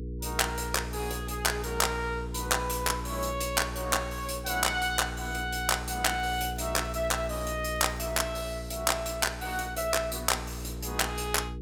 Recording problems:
hum; 60 Hz, harmonics up to 480 Hz, SNR 9 dB
crackling; from 6 to 8.5 s; loose cable, SNR 30 dB

